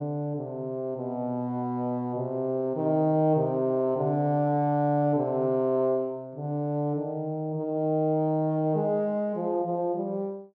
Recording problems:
none

